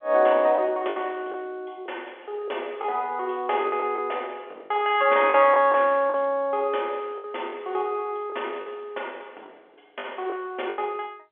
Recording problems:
phone line; 320 Hz to 3.4 kHz, G.711
lost packets; 8% of the sound replaced, filled with the last packet

